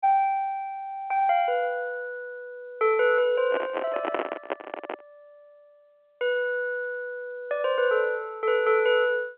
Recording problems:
telephone audio; 300 Hz to 3.3 kHz, G.711
microphone handling noise; from 3.5 to 5 s; peak +2 dB vs average level

